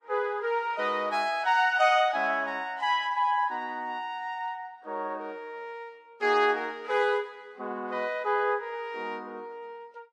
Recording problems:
codec artefacts; Vorbis, log-spectral distance 2 dB, nothing above 12.3 kHz

